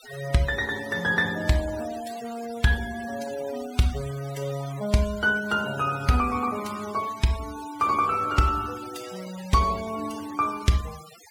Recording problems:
noise reduction artefacts; signal-to-artefact ratio 16 dB

